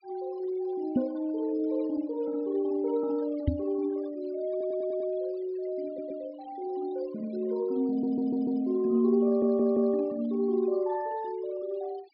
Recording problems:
treble cut off; nothing above 5.5 kHz
denoising artefacts; signal-to-artefact ratio 24 dB
microphone bump; at 1 s and at 3.5 s; peak +7 dB vs average level
audio stuttering; 4 times, first at 4.5 s

